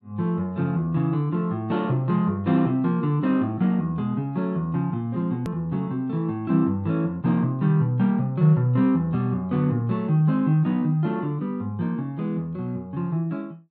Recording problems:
hard cut with a click; at 5.5 s

